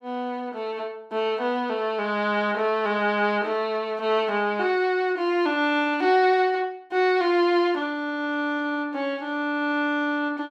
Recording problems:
none

